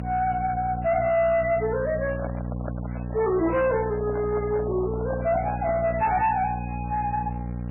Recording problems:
codec artefacts; MP3, log-spectral distance 3 dB, nothing above 2.7 kHz
distortion; soft clipping, signal-to-distortion ratio 10 dB
hum; 60 Hz, harmonics up to 840 Hz, SNR 7 dB
handling noise; from 2 to 6 s; peak -5 dB vs average level

